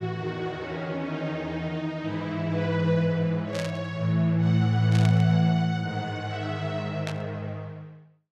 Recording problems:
burst of static; at 3.5 s, at 5 s and at 7 s; peak -5 dB vs average level

